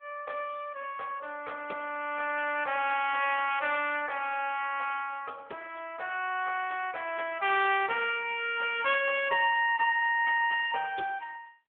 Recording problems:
telephone audio; 340 Hz to 3.4 kHz, AMR-NB

